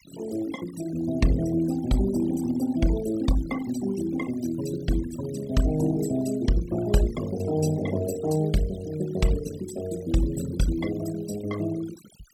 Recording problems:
noise reduction artefacts; signal-to-artefact ratio 14 dB

